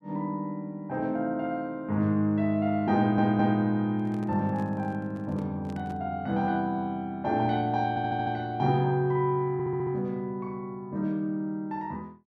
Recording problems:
stutter; at 3 s, at 8 s and at 9.5 s
microphone handling noise; from 4 to 6 s; peak -11 dB vs average level

